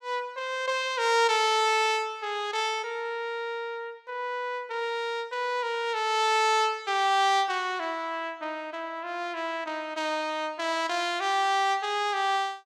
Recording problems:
none

